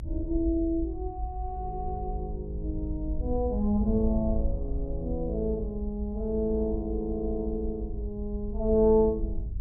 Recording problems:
low-frequency rumble; below 64 Hz, SNR 6 dB

